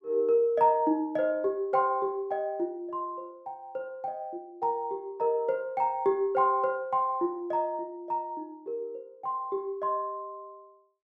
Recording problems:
none

